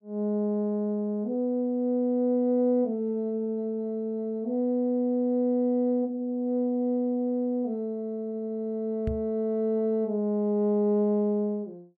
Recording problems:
microphone bump; at 9 s; peak -1 dB vs average level

